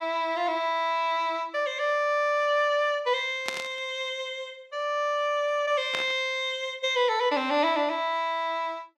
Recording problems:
burst of static; at 3.5 s and at 6 s; peak 0 dB vs average level

